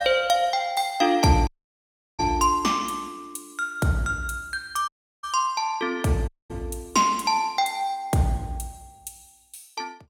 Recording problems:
dropout; at 1.5 s for 0.5 s, at 5 s and at 6.5 s

